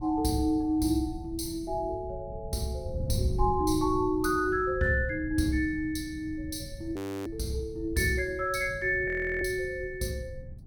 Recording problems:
wind noise; below 130 Hz, SNR 11 dB
audio freezing; at 7 s and at 9 s

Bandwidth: 17 kHz